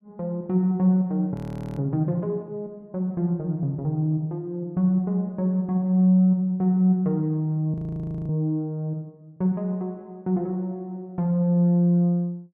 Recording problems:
audio freezing; at 1.5 s and at 7.5 s for 0.5 s

